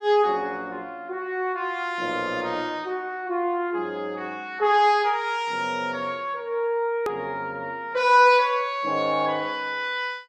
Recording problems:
hard cut with a click; at 7 s

